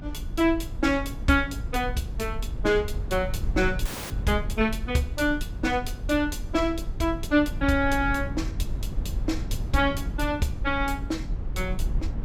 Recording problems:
rumble; below 84 Hz, SNR 7 dB
audio cutting out; at 4 s

